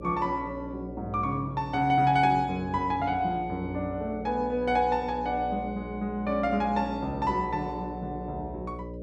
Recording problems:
hum; 60 Hz, harmonics up to 600 Hz, SNR 12 dB

